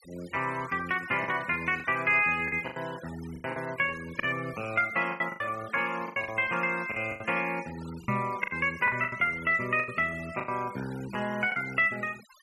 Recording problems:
denoising artefacts; signal-to-artefact ratio 19 dB
packet loss; 10% of the sound replaced, filled with the last packet
microphone bump; at 8 s; peak +2 dB vs average level

